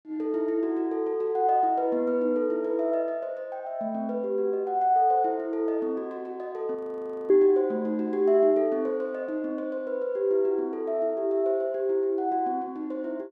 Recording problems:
audio freezing; at 7 s for 0.5 s

